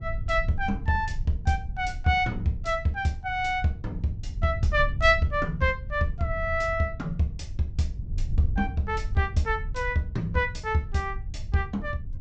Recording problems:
treble missing; nothing above 8 kHz
rumble; below 84 Hz, SNR 8 dB

